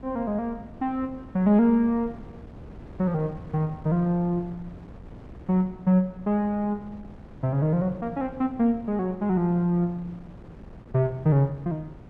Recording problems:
wind noise; below 310 Hz, SNR 19 dB

